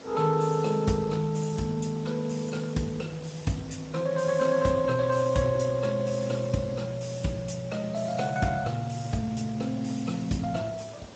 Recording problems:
lossy codec; Vorbis, then Speex, log-spectral distance 5 dB, nothing above 7.6 kHz
hiss; slope -5 dB per octave, SNR 18 dB

